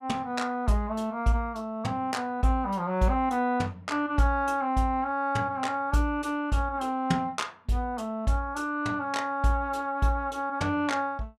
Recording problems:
none

